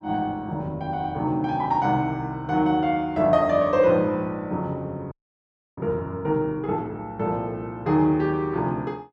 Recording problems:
frozen audio; at 5 s for 0.5 s

